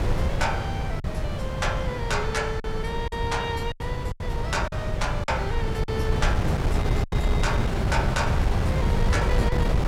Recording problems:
wind noise; below 180 Hz, SNR -4 dB
packet loss; 5% of the sound replaced, filled with silence

